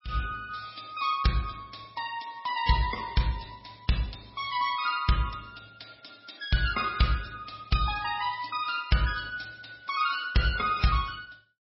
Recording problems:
lossy codec; MP3, log-spectral distance 9 dB, nothing above 5.5 kHz

